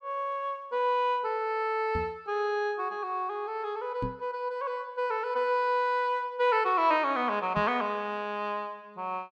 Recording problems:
knock on the microphone; at 2 s, at 4 s and at 7.5 s; peak -1 dB vs average level

